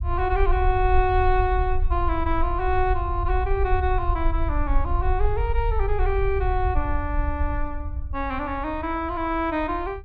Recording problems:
rumble; below 62 Hz, SNR 2 dB

